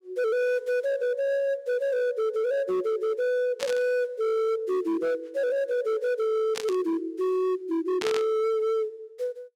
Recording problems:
distortion; hard clipping, signal-to-distortion ratio 12 dB
burst of static; at 3.5 s, at 6.5 s and at 8 s; peak -2 dB vs average level

